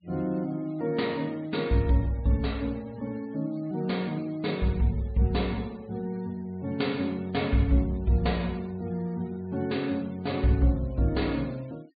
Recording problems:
treble cut off; nothing above 4.6 kHz
denoising artefacts; signal-to-artefact ratio 26 dB

